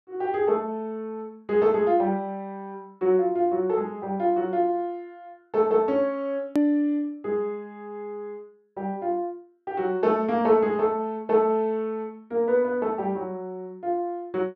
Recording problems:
hard cut with a click; at 6.5 s

